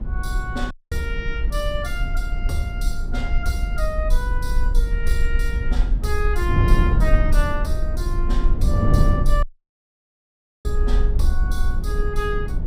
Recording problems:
rumble; below 44 Hz, strongest tone 22 Hz, SNR -3 dB
wind noise; below 140 Hz, SNR -2 dB
audio cutting out; at 0.5 s and at 9.5 s for 1 s

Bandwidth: 15.5 kHz